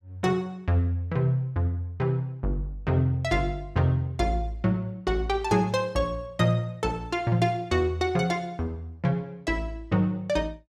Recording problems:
none

